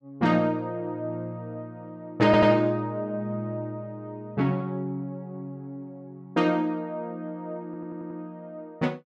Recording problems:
audio stuttering; at 2.5 s and at 7.5 s

